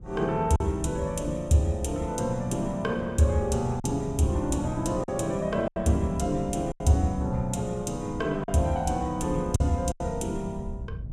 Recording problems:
wind on the microphone; below 120 Hz, SNR 13 dB
lost packets; 4% of the sound replaced, filled with silence

